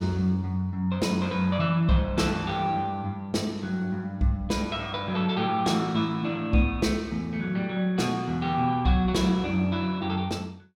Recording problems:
none

